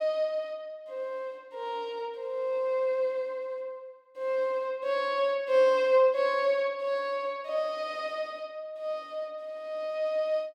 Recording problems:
none

